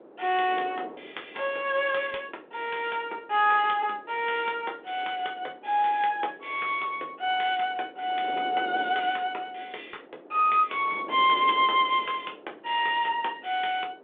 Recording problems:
phone line; 320 Hz to 3.6 kHz, G.726
wind noise; below 610 Hz, SNR 19 dB

